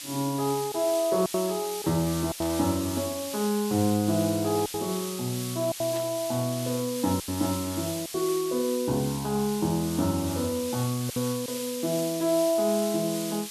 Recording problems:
hiss; slope +4 dB per octave, SNR 8 dB
lost packets; 4% of the sound replaced, filled with silence
burst of static; at 2.5 s and at 6 s; peak -10 dB vs average level

